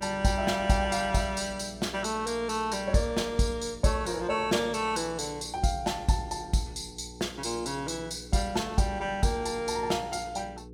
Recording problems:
electrical hum; 60 Hz, harmonics up to 480 Hz, SNR 17 dB

